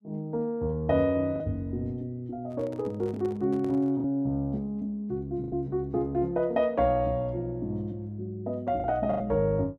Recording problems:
packet loss; 3% of the sound replaced, filled with the last packet
handling noise; from 2.5 to 4 s; peak -11 dB vs average level

